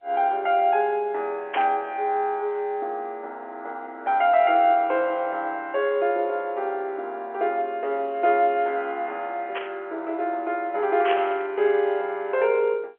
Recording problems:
phone line; 340 Hz to 3.4 kHz, G.711
static burst; at 1.5 s, at 9.5 s and at 11 s; peak -1 dB vs average level

